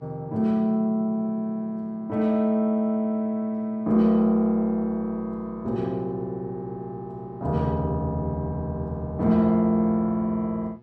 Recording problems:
electrical hum; 60 Hz, harmonics up to 1.3 kHz, SNR 27 dB

